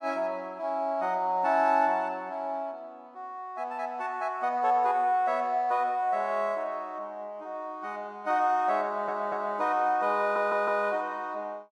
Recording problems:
audio stuttering; at 9 s and at 10 s

